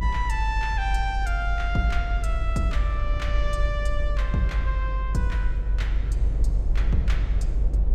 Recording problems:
low-frequency rumble; below 50 Hz, strongest tone 48 Hz, SNR -3 dB

